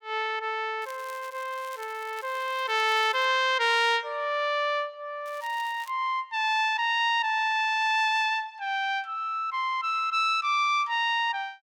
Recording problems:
crackling; from 1 to 3.5 s and at 5.5 s; loose cable, SNR 23 dB

